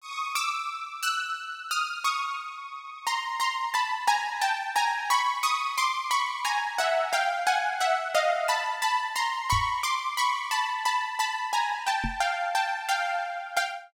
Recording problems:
microphone thump; at 9.5 s and at 12 s; peak 0 dB vs average level

